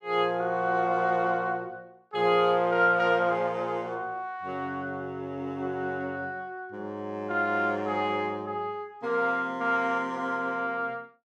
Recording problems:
none

